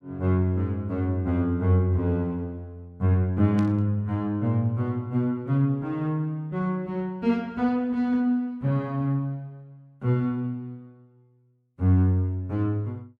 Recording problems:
burst of static; at 3.5 s; peak -14 dB vs average level

